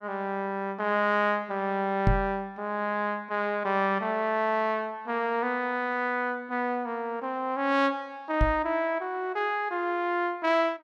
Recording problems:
microphone bump; at 2 s and at 8.5 s; peak +8 dB vs average level

